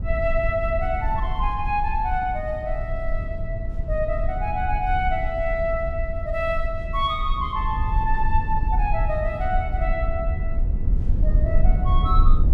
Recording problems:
low-frequency rumble; below 62 Hz, SNR 0 dB

